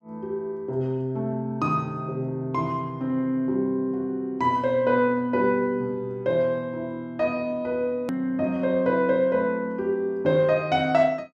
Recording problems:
edit click; at 8 s

